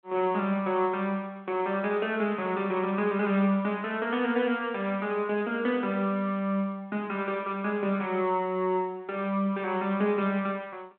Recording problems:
telephone audio; 280 Hz to 3.5 kHz, G.726

